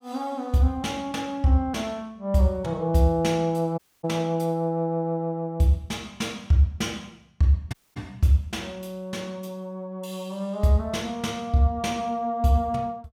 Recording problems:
dropout; at 4 s and at 7.5 s

